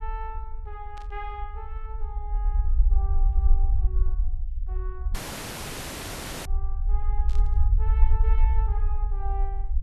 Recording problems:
low-frequency rumble; below 54 Hz, SNR -15 dB
burst of static; at 1 s and at 7.5 s; peak -4 dB vs average level
audio cutting out; at 5 s for 1.5 s

